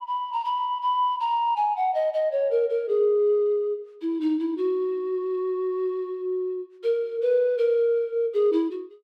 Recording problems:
none

